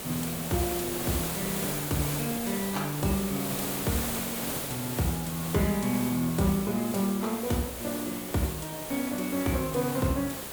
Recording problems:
background hiss; slope -4 dB per octave, SNR 3 dB

